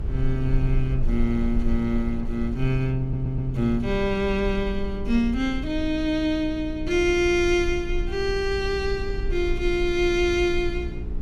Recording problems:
hum; 60 Hz, harmonics up to 420 Hz, SNR 14 dB
low-frequency rumble; below 48 Hz, strongest tone 22 Hz, SNR 8 dB
audio stuttering; at 3 s

